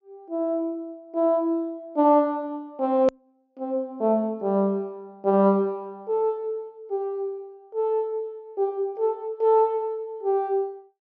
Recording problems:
treble missing; nothing above 7 kHz
edit click; at 3 s

